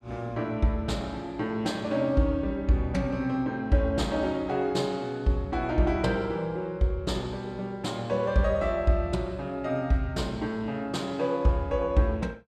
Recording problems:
none

